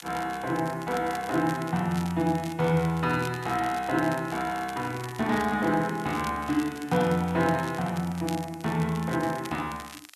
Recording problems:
hiss; slope +4 dB per octave, SNR 28 dB
crackling; vinyl, SNR 17 dB

